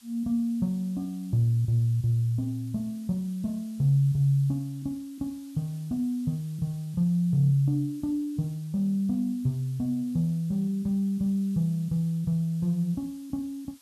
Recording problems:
hiss; slope +2 dB per octave, SNR 27 dB

